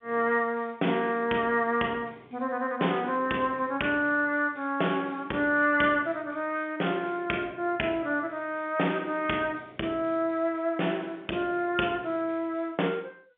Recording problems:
phone line; 240 Hz to 3.4 kHz, G.711

